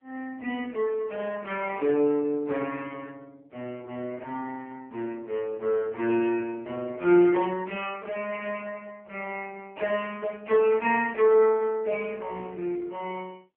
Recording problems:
phone line; 240 Hz to 2.9 kHz, AMR-NB

